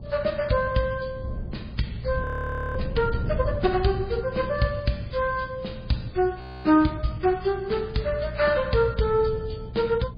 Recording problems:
lossy codec; MP3, log-spectral distance 3 dB, nothing above 4.5 kHz
hum; 60 Hz, harmonics up to 420 Hz, SNR 16 dB
wind noise; below 140 Hz, SNR 12 dB
frozen audio; at 2 s for 0.5 s and at 6.5 s

